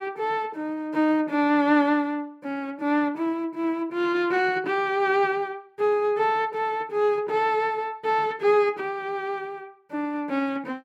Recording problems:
none

